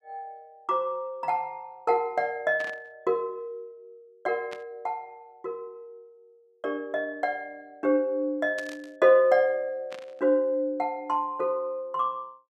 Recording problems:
burst of static; 4 times, first at 2.5 s; peak -10 dB vs average level

